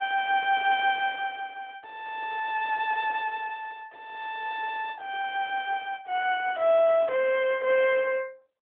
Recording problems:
phone line; 320 Hz to 3.7 kHz, AMR-NB

